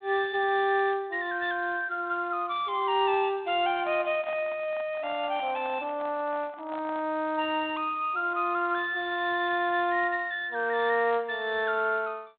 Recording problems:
phone line; 260 Hz to 3.7 kHz, G.726
microphone handling noise; from 3.5 to 7 s; peak -11 dB vs average level

